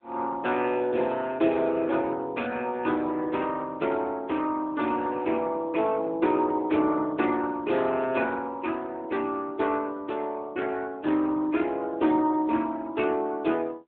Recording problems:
phone line; 260 Hz to 3.4 kHz, AMR-NB

